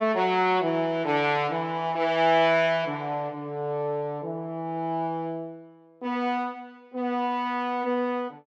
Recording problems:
none

